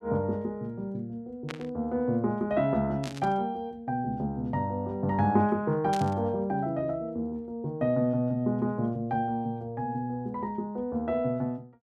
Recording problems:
static burst; at 1.5 s, at 3 s and at 6 s; peak -4 dB vs average level

